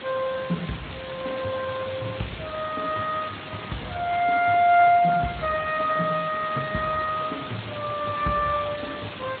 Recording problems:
lossy codec; AAC, then Speex, log-spectral distance 17 dB
background hiss; SNR 12 dB

